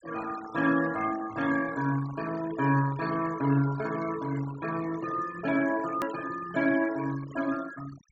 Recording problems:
treble missing; nothing above 8 kHz
denoising artefacts; signal-to-artefact ratio 15 dB
edit click; at 6 s

